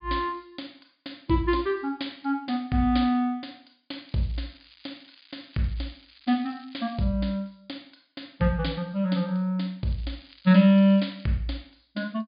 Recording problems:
low-pass filter; nothing above 4.9 kHz
crackling; from 4 to 7 s and from 10 to 11 s; loose cable, SNR 27 dB

